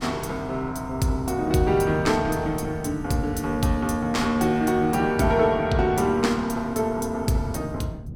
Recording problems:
wind noise; below 170 Hz, SNR 14 dB

